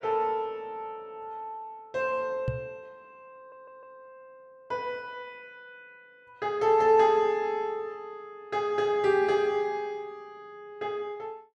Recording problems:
microphone thump; at 2.5 s; peak +1 dB vs average level
stutter; at 3.5 s

